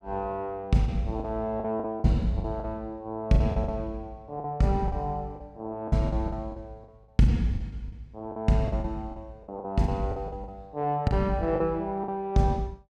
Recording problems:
lost packets; 11% of the sound replaced, filled with the last packet

